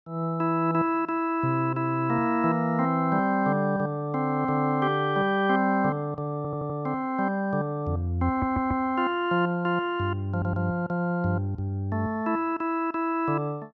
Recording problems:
stutter; at 6.5 s, at 8.5 s and at 10 s

